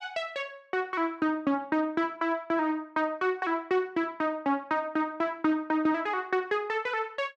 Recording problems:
none

